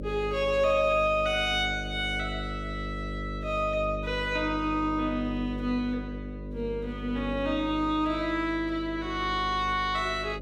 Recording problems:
hum; 50 Hz, harmonics up to 600 Hz, SNR 9 dB

